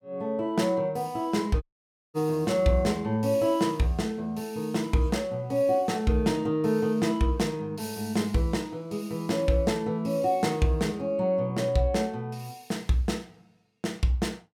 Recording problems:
audio cutting out; at 1.5 s for 0.5 s

